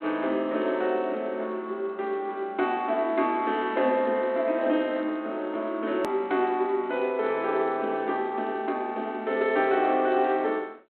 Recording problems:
telephone audio; 240 Hz to 3.8 kHz, G.726
click at an edit; at 6 s

